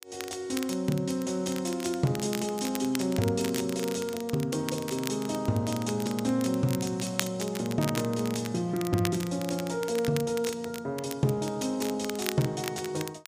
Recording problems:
crackling; vinyl, SNR 10 dB

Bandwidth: 15 kHz